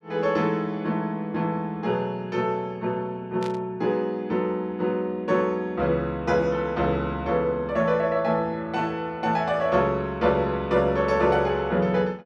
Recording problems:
burst of static; at 3.5 s; peak -11 dB vs average level

